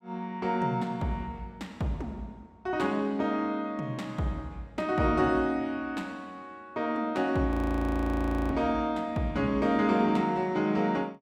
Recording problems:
frozen audio; at 7.5 s for 1 s

